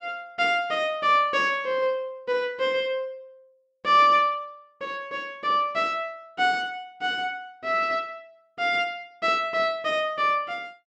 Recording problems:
none

